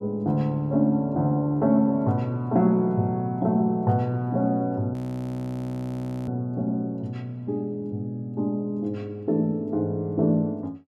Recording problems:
audio freezing; at 5 s for 1.5 s

